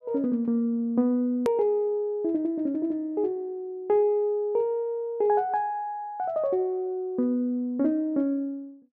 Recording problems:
edit click; at 1.5 s

